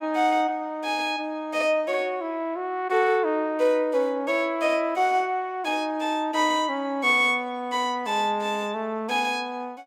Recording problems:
none

